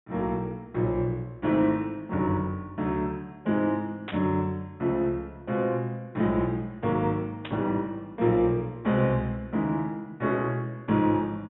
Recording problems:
treble cut off; nothing above 3.7 kHz
burst of static; at 4 s and at 7.5 s; peak -5 dB vs average level

